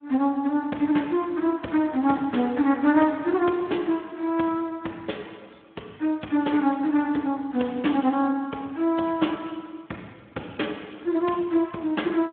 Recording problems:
phone line; 190 Hz to 3.4 kHz, Speex

